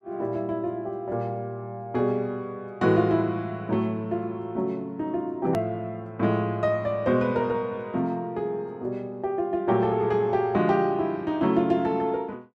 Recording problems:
hard cut with a click; at 5.5 s

